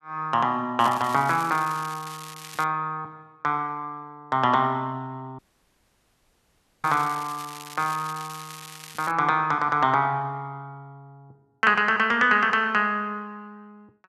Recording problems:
crackle; from 1 to 2.5 s and from 7 to 9 s; loose cable, SNR 17 dB
audio cutting out; at 5.5 s for 1.5 s

